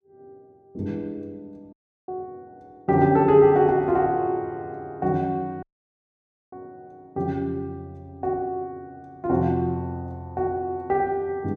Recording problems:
audio cutting out; at 1.5 s and at 5.5 s for 1 s

